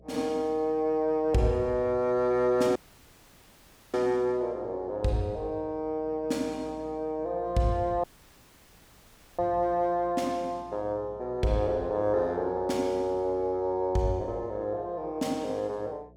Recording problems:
hum; 60 Hz, harmonics up to 660 Hz, SNR 24 dB
dropout; at 3 s for 1 s and at 8 s for 1.5 s

